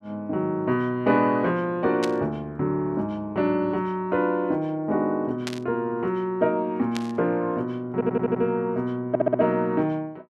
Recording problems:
static burst; at 2 s, at 5.5 s and at 7 s; peak -3 dB vs average level
stutter; at 8 s and at 9 s

